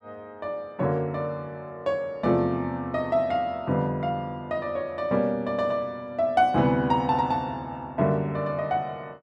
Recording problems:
none

